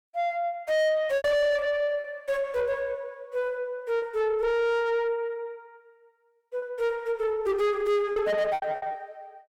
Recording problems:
distortion; soft clipping, signal-to-distortion ratio 6 dB
packet loss; 5% of the sound replaced, filled with repeated pitch periods

